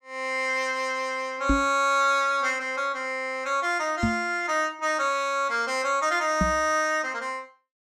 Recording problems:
microphone bump; at 1.5 s, at 4 s and at 6.5 s; peak +4 dB vs average level

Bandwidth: 15.5 kHz